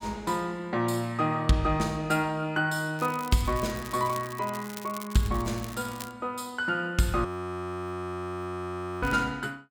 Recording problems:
crackling; from 3 to 4.5 s, from 4.5 to 6 s and at 9 s; loose cable, SNR 15 dB
frozen audio; at 7.5 s for 2 s

